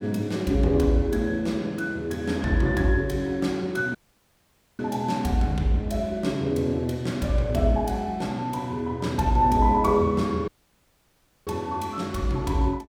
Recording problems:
audio cutting out; at 4 s for 1 s and at 10 s for 1 s

